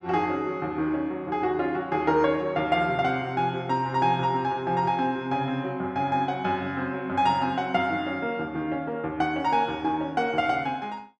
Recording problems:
none

